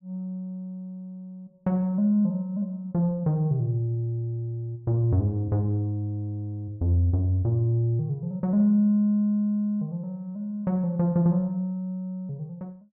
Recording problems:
none

